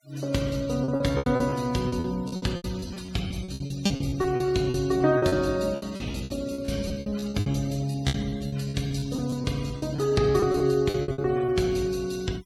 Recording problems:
denoising artefacts; signal-to-artefact ratio 20 dB
lost packets; 18% of the sound replaced, filled with repeated pitch periods

